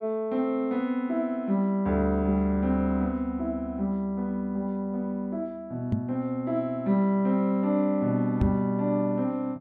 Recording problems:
knock on the microphone; at 6 s and at 8.5 s; peak +4 dB vs average level

